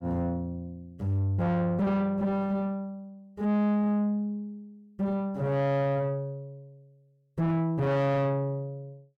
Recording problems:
distortion; soft clipping, signal-to-distortion ratio 6 dB

